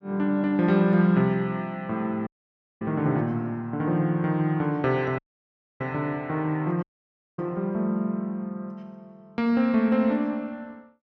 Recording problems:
audio cutting out; at 2.5 s for 0.5 s, at 5 s for 0.5 s and at 7 s for 0.5 s

